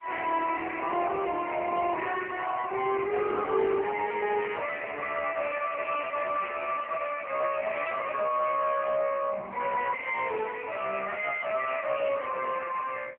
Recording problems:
phone line; 300 Hz to 2.6 kHz, AMR-NB
distorted audio; soft clipping, signal-to-distortion ratio 7 dB
handling noise; from 7 to 9 s; peak -17 dB vs average level

